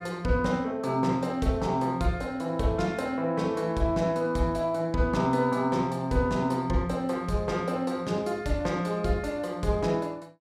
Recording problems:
none

